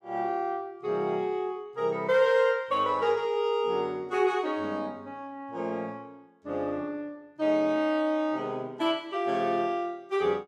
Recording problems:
none

